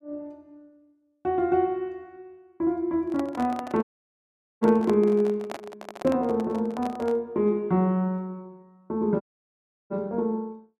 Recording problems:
microphone handling noise; from 3 to 7 s; peak -4 dB vs average level
dropout; at 4 s for 1 s and at 9 s for 0.5 s

